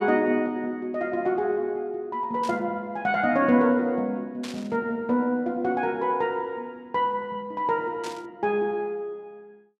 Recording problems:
burst of static; at 2.5 s, at 4.5 s and at 8 s; peak -8 dB vs average level

